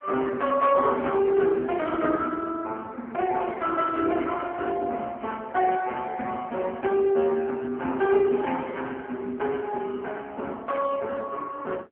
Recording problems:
phone line; 260 Hz to 3.4 kHz, AMR-NB

